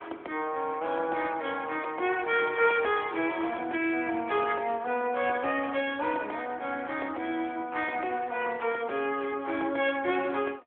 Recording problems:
phone line; 260 Hz to 3.6 kHz, AMR-NB

